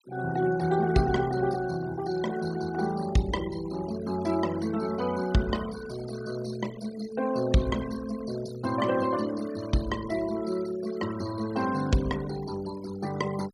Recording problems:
noise reduction artefacts; signal-to-artefact ratio 15 dB

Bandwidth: 14.5 kHz